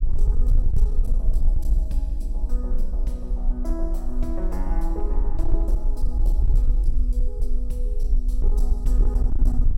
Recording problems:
distortion; hard clipping, signal-to-distortion ratio 12 dB
low-frequency rumble; below 44 Hz, strongest tone 20 Hz, SNR -11 dB

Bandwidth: 16.5 kHz